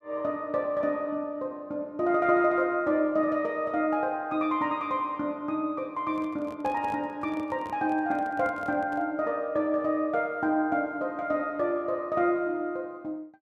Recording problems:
microphone handling noise; from 6 to 9 s; peak -10 dB vs average level

